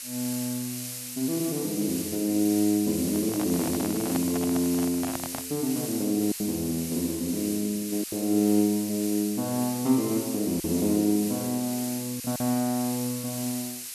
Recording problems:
hiss; SNR 7 dB
lost packets; 2% of the sound replaced, filled with silence
handling noise; from 3 to 5.5 s; peak -3 dB vs average level

